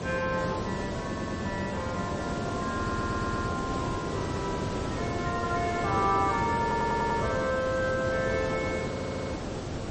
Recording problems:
codec artefacts; MP3, log-spectral distance 7 dB, nothing above 7.6 kHz
hiss; slope -7 dB per octave, SNR 2 dB
stutter; 4 times, first at 1 s

